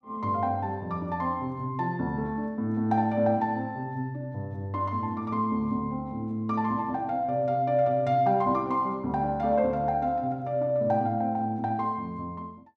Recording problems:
none

